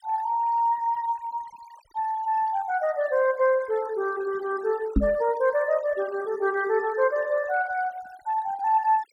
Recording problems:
denoising artefacts; signal-to-artefact ratio 21 dB
knock on the microphone; at 5 s; peak +7 dB vs average level

